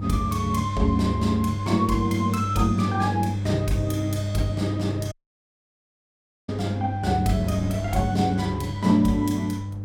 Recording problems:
electrical hum; 50 Hz, harmonics up to 500 Hz, SNR 5 dB
wind on the microphone; below 270 Hz, SNR 20 dB
audio cutting out; at 5 s for 1.5 s

